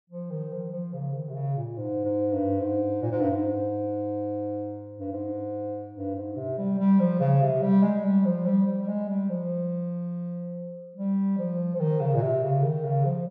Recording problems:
none

